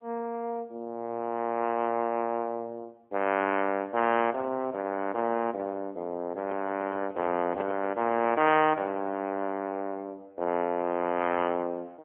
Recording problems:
phone line; 190 Hz to 3.2 kHz, AMR-NB
handling noise; from 6.5 to 8.5 s; peak -8 dB vs average level

